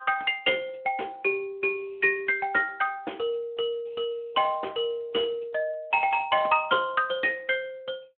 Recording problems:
telephone audio; 260 Hz to 3.4 kHz, Speex

